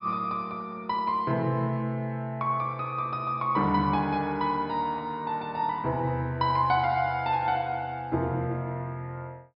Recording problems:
treble missing; nothing above 5.1 kHz

